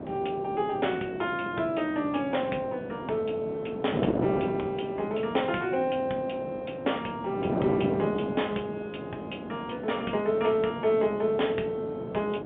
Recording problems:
telephone audio; 260 Hz to 3.6 kHz, G.711
wind on the microphone; below 580 Hz, SNR 6 dB

